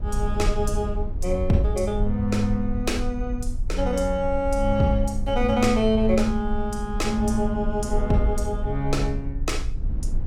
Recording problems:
rumble; below 54 Hz, SNR 7 dB
wind on the microphone; below 130 Hz, SNR 14 dB

